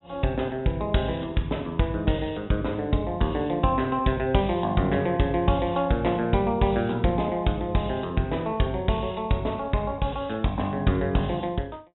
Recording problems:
treble missing; nothing above 3.8 kHz

